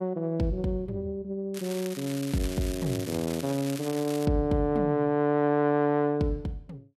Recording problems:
crackle; from 1.5 to 4.5 s; loose cable, SNR 13 dB

